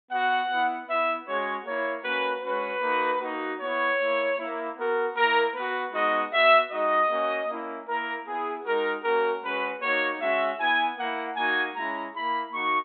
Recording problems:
treble missing; nothing above 4 kHz

